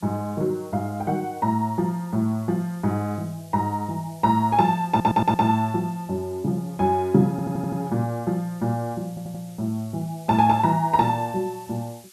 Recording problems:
hiss; slope +3 dB per octave, SNR 25 dB
audio stuttering; at 5 s, at 7.5 s and at 9 s

